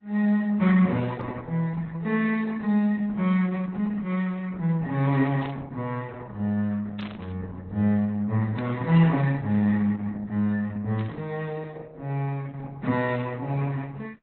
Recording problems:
lossy codec; Opus, then AAC, log-spectral distance 3 dB, nothing above 4 kHz
burst of static; 4 times, first at 5.5 s; peak -9 dB vs average level

